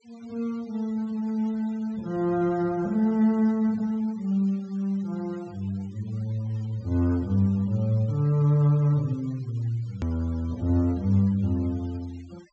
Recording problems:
treble missing; nothing above 8 kHz
denoising artefacts; signal-to-artefact ratio 28 dB
hard cut with a click; at 10 s

